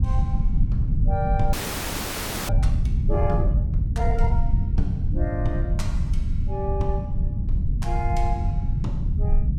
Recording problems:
rumble; below 100 Hz, SNR -7 dB
frozen audio; at 1.5 s for 1 s

